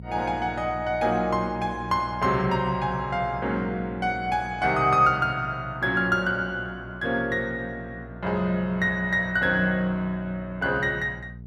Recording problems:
hum; 60 Hz, harmonics up to 480 Hz, SNR 16 dB

